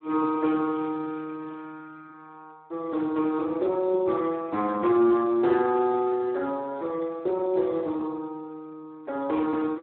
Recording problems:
phone line; 240 Hz to 2.4 kHz, Speex

